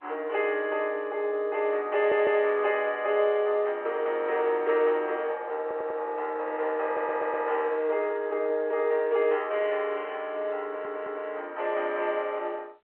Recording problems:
phone line; 370 Hz to 3.2 kHz, G.711
stutter; 4 times, first at 2 s

